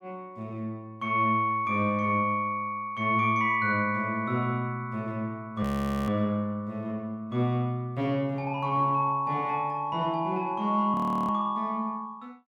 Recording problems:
audio freezing; at 5.5 s and at 11 s

